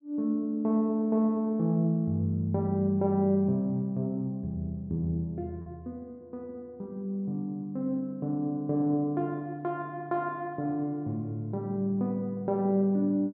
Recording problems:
lost packets; 0.3% of the sound replaced, filled with repeated pitch periods

